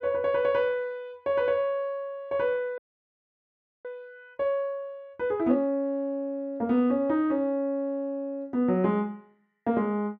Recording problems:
audio freezing; at 3 s for 1 s

